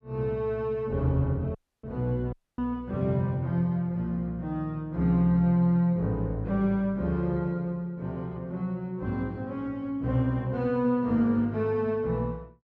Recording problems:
dropout; at 1.5 s and at 2.5 s

